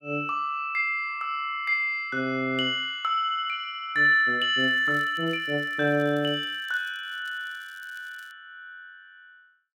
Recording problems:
crackle; from 4.5 to 7 s and from 7 to 8.5 s; loose cable, SNR 29 dB

